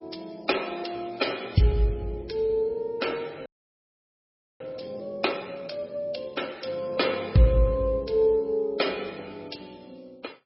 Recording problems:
codec artefacts; AAC, then MP3, log-spectral distance 5 dB, nothing above 5.3 kHz
frozen audio; at 3.5 s for 1 s

